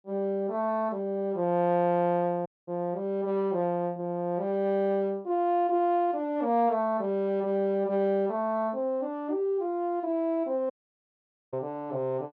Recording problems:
dropout; at 2.5 s and at 11 s for 1 s

